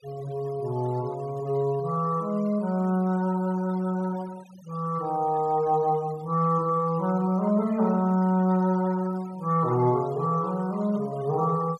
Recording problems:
noise reduction artefacts; signal-to-artefact ratio 24 dB

